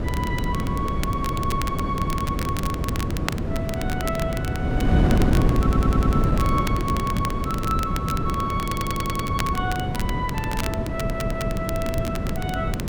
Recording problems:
wind on the microphone; below 260 Hz, SNR -4 dB
crackling; vinyl, SNR 7 dB
audio stuttering; at 5.5 s, at 8.5 s and at 11 s

